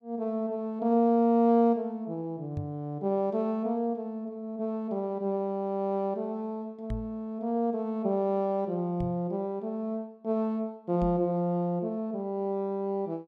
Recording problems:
microphone bump; 4 times, first at 2.5 s; peak -2 dB vs average level

